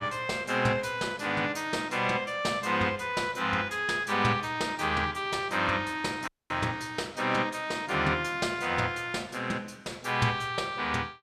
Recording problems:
dropout; at 6.5 s

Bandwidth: 14.5 kHz